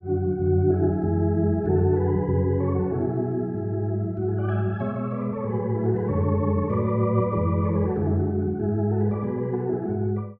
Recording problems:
none

